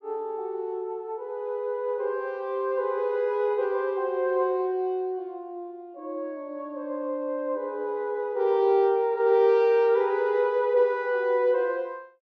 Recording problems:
none

